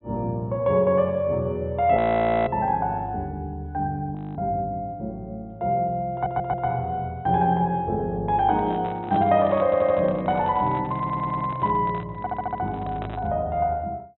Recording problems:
treble cut off; nothing above 3.9 kHz
frozen audio; at 2 s for 0.5 s and at 4 s
audio stuttering; 4 times, first at 6 s
microphone handling noise; from 8.5 to 13 s; peak -6 dB vs average level

